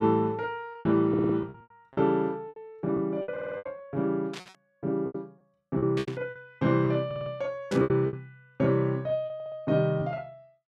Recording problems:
lost packets; 11% of the sound replaced, filled with repeated pitch periods
audio stuttering; 4 times, first at 1 s
static burst; at 4.5 s, at 6 s and at 7.5 s; peak -6 dB vs average level

